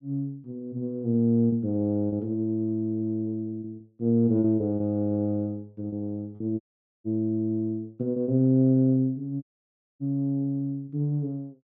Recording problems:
packet loss; 5% of the sound replaced, filled with repeated pitch periods
dropout; at 6.5 s and at 9.5 s for 0.5 s

